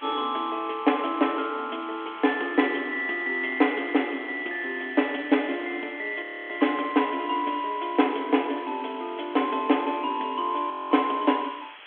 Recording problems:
phone line; 240 Hz to 3.4 kHz, G.726
hiss; SNR 19 dB
audio freezing; at 6 s and at 11 s

